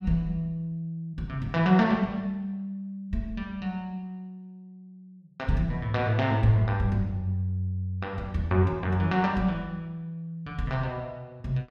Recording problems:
none

